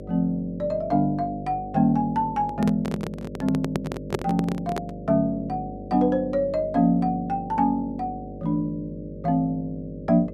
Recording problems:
electrical hum; 50 Hz, harmonics up to 600 Hz, SNR 13 dB
handling noise; from 2.5 to 5 s; peak +3 dB vs average level

